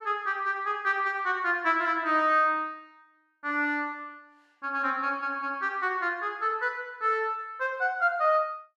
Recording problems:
none

